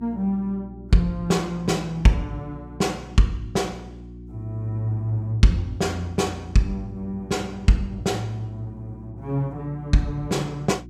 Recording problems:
mains hum; 60 Hz, harmonics up to 360 Hz, SNR 16 dB

